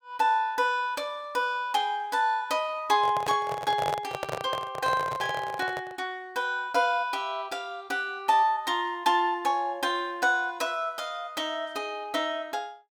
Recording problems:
microphone handling noise; from 3 to 6 s; peak 0 dB vs average level

